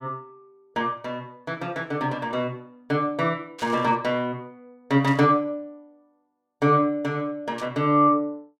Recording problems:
static burst; at 3.5 s, at 5 s and at 7.5 s; peak -11 dB vs average level

